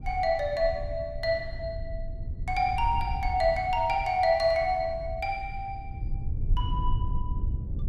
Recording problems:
rumble; below 84 Hz, SNR 8 dB

